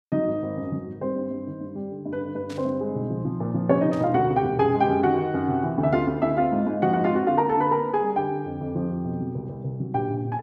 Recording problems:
burst of static; at 2.5 s and at 4 s; peak -15 dB vs average level

